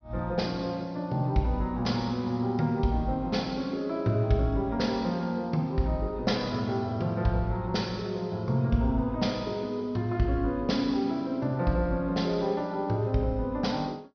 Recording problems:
low-pass filter; nothing above 6 kHz

